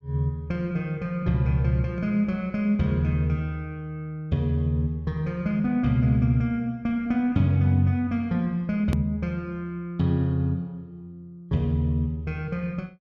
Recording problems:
hard cut with a click; at 9 s

